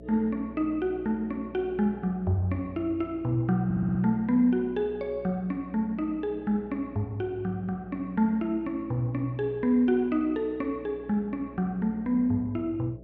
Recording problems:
hum; 60 Hz, harmonics up to 660 Hz, SNR 20 dB
stutter; at 3.5 s

